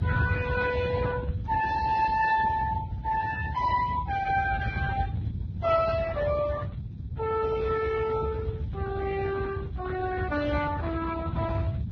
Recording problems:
lossy compression; Speex, then Vorbis, log-spectral distance 3 dB, nothing above 6.3 kHz
rumble; below 140 Hz, SNR 9 dB
wind on the microphone; below 150 Hz, SNR 8 dB

